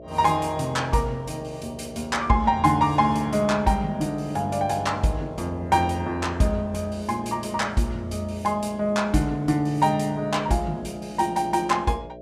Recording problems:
electrical hum; 60 Hz, harmonics up to 660 Hz, SNR 17 dB

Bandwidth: 14.5 kHz